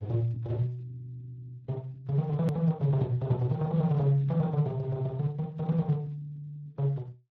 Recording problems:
codec artefacts; AAC, then Speex, log-spectral distance 2 dB, nothing above 13.1 kHz
click at an edit; at 2.5 s

